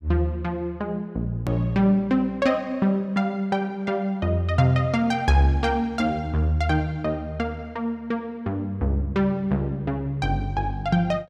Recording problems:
click at an edit; at 1.5 s

